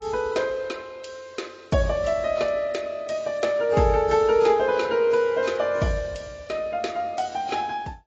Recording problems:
codec artefacts; AAC, log-spectral distance 3 dB, nothing above 7.3 kHz

